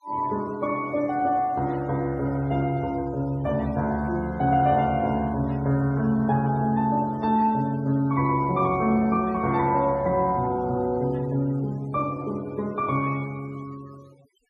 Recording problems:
denoising artefacts; signal-to-artefact ratio 25 dB

